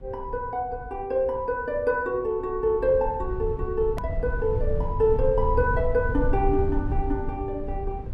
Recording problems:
low-frequency rumble; below 84 Hz, SNR 5 dB
click at an edit; at 4 s

